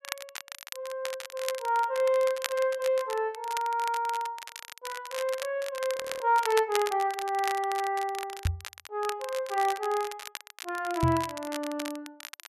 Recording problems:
crackling; vinyl, SNR 11 dB
frozen audio; at 6 s
microphone bump; at 8.5 s and at 11 s; peak +5 dB vs average level

